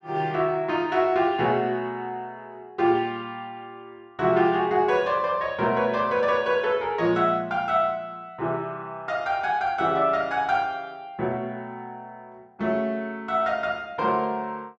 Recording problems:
none

